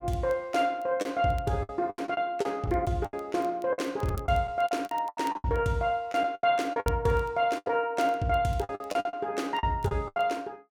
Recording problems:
crackle; vinyl, SNR 26 dB
lost packets; 13% of the sound replaced, filled with the last packet

